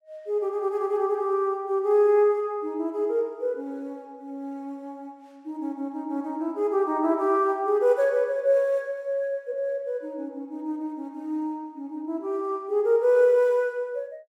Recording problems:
none

